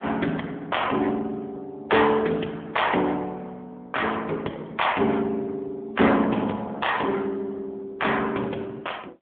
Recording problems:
telephone audio; 220 Hz to 3.5 kHz, AMR-NB

